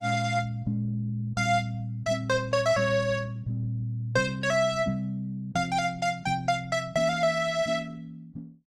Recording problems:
lossy codec; Opus, log-spectral distance 2 dB, nothing above 17.1 kHz

